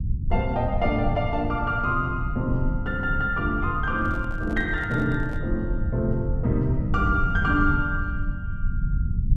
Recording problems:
low-frequency rumble; below 100 Hz, SNR 4 dB
handling noise; from 4 to 5.5 s; peak -12 dB vs average level

